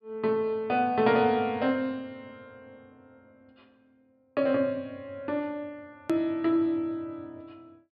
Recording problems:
treble cut off; nothing above 5 kHz
edit click; at 6 s

